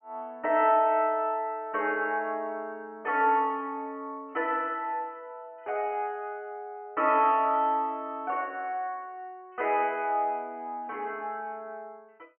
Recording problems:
treble cut off; nothing above 3.1 kHz

